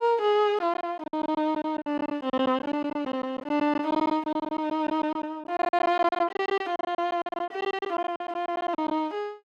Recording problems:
packet loss; 17% of the sound replaced, filled with silence

